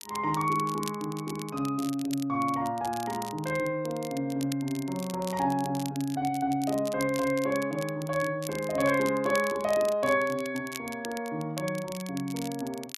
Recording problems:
crackle; vinyl, SNR 14 dB

